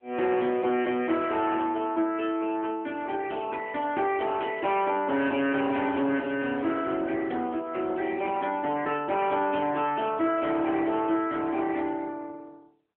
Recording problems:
phone line; 190 Hz to 3.1 kHz, AMR-NB
distorted audio; hard clipping, uneven, signal-to-distortion ratio 10 dB

